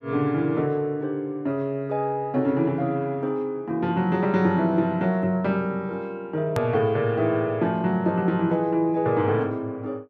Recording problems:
click at an edit; at 6.5 s

